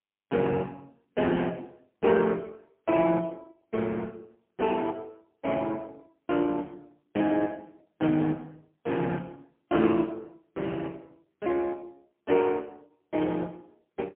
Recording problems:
phone line; 240 Hz to 3.3 kHz, AMR-NB, then MP3

